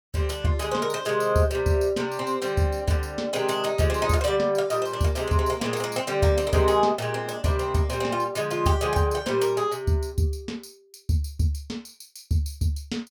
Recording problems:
none

